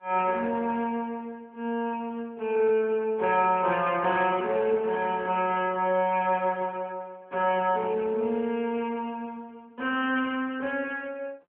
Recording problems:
telephone audio; 240 Hz to 3.1 kHz, AMR-NB

